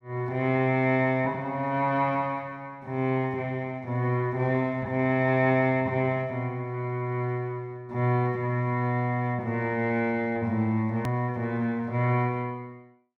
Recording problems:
click at an edit; at 11 s

